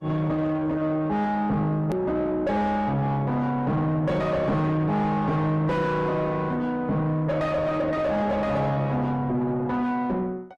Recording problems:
codec artefacts; Opus, log-spectral distance 2 dB, nothing above 12.7 kHz
distortion; soft clipping, signal-to-distortion ratio 6 dB
hard cut with a click; at 2 s

